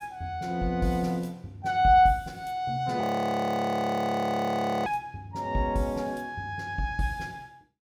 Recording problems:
frozen audio; at 3 s for 2 s

